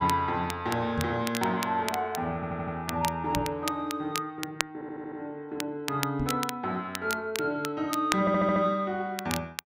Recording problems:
crackle; vinyl, SNR 8 dB
microphone thump; at 1 s, at 3.5 s and at 6 s; peak +1 dB vs average level
stutter; at 2.5 s, at 4.5 s and at 8 s

